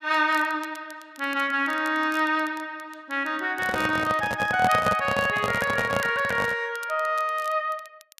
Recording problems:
crackle; vinyl, SNR 23 dB
microphone handling noise; from 3.5 to 6.5 s; peak +2 dB vs average level

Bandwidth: 14.5 kHz